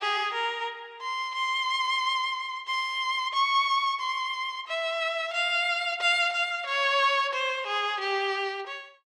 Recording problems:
none

